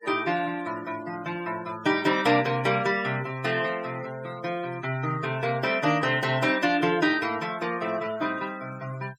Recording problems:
denoising artefacts; signal-to-artefact ratio 18 dB

